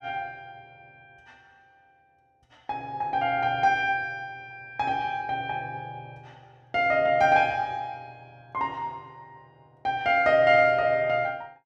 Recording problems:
none

